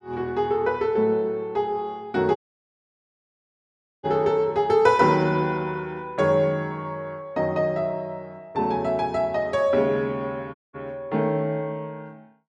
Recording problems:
audio cutting out; at 2.5 s for 1.5 s and at 11 s

